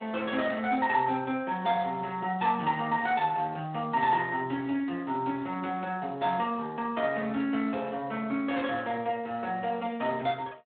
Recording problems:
telephone audio; 240 Hz to 3.5 kHz, Speex

